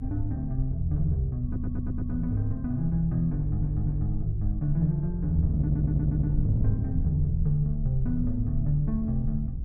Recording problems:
electrical hum; 50 Hz, harmonics up to 350 Hz, SNR 28 dB
rumble; below 66 Hz, SNR 8 dB
wind on the microphone; below 160 Hz, SNR 7 dB
stutter; at 1.5 s, at 3.5 s and at 5.5 s

